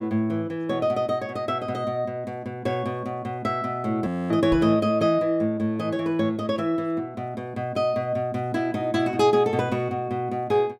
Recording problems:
frozen audio; at 4 s
microphone thump; at 4.5 s; peak -2 dB vs average level

